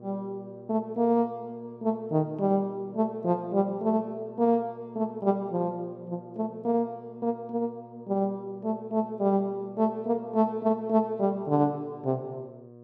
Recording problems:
electrical hum; 60 Hz, harmonics up to 1.1 kHz, SNR 20 dB

